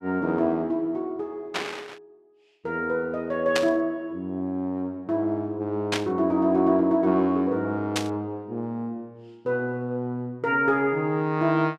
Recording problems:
burst of static; 4 times, first at 1.5 s; peak +3 dB vs average level

